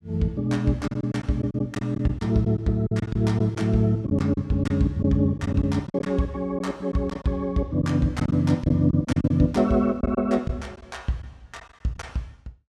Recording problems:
lost packets; 8% of the sound replaced, filled with silence

